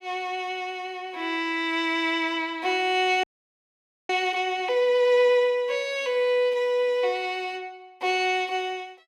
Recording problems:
audio freezing; at 3 s for 1 s

